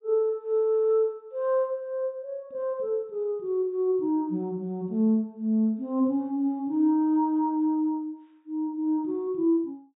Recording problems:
low-pass filter; nothing above 4 kHz

